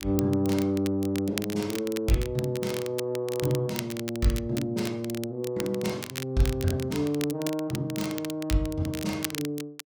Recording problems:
crackling; vinyl, SNR 10 dB

